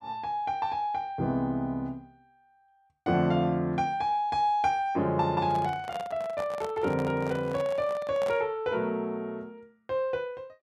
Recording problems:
microphone handling noise; from 5.5 to 8.5 s; peak -6 dB vs average level

